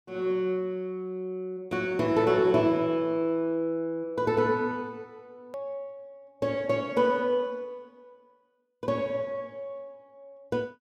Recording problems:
click at an edit; at 5.5 s

